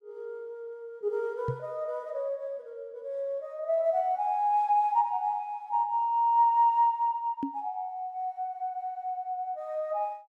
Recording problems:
knock on the microphone; at 1.5 s and at 7.5 s; peak 0 dB vs average level

